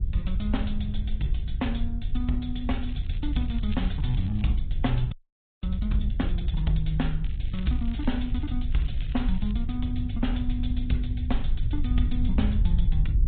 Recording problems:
low-pass filter; nothing above 3.8 kHz
lossy compression; MP3, then MP2, log-spectral distance 3 dB
low-frequency rumble; below 72 Hz, SNR -1 dB
crackling; 4 times, first at 3 s; loose cable, SNR 20 dB
frozen audio; at 5 s for 0.5 s

